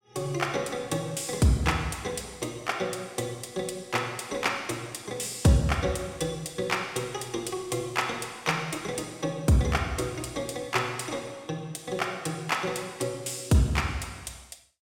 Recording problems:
none

